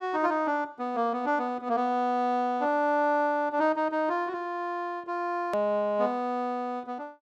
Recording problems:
click at an edit; at 5.5 s

